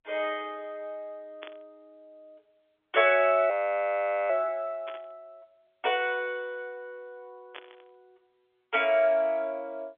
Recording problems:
phone line; 280 Hz to 3.5 kHz, G.711
static burst; at 1.5 s, at 5 s and at 7.5 s; peak -11 dB vs average level
audio freezing; at 3.5 s for 1 s

